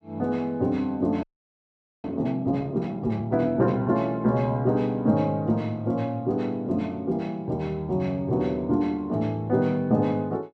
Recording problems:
frozen audio; at 1 s for 1 s

